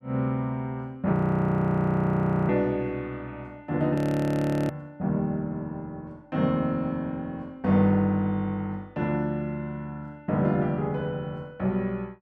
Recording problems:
frozen audio; at 1 s for 1.5 s and at 4 s for 0.5 s

